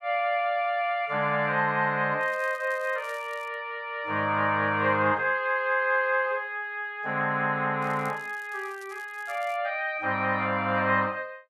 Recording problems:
crackle; from 2 to 3.5 s and from 8 to 9.5 s; loose cable, SNR 27 dB

